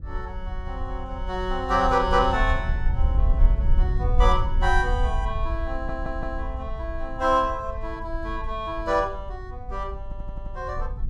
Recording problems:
wind noise; below 58 Hz, SNR 3 dB
audio stuttering; at 5.5 s and at 10 s

